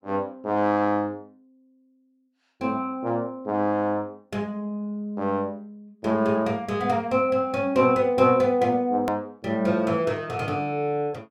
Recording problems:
hard cut with a click; at 9 s

